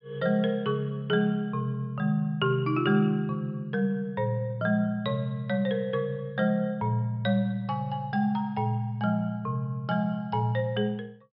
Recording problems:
treble cut off; nothing above 5.5 kHz

